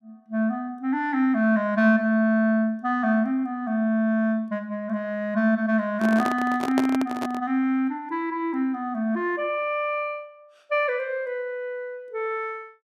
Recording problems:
handling noise; from 6 to 7.5 s; peak +2 dB vs average level

